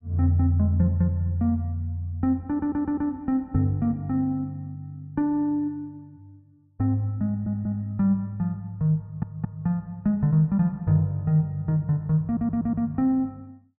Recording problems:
audio stuttering; 4 times, first at 2.5 s

